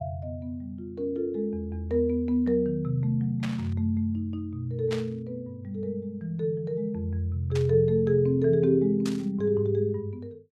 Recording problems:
static burst; 4 times, first at 3.5 s; peak -5 dB vs average level

